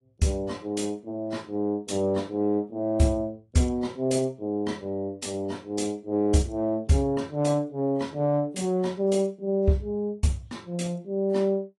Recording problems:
codec artefacts; AAC, log-spectral distance 2 dB, nothing above 10.4 kHz

